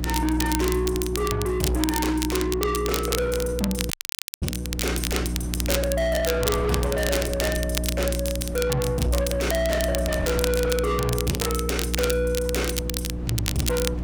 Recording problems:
distortion; soft clipping, signal-to-distortion ratio 7 dB
hum; 60 Hz, harmonics up to 360 Hz, SNR 4 dB
wind on the microphone; below 610 Hz, SNR 14 dB
crackle; vinyl, SNR 5 dB
dropout; at 4 s for 0.5 s

